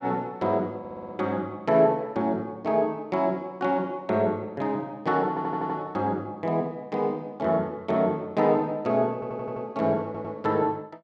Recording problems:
audio stuttering; 4 times, first at 1 s

